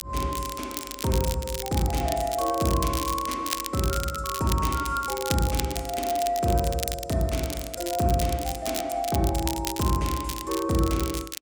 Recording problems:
crackle; vinyl, SNR 7 dB

